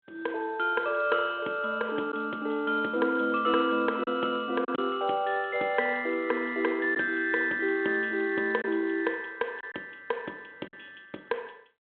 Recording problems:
telephone audio; 240 Hz to 3.4 kHz, G.726
packet loss; 1.8% of the sound replaced, filled with silence

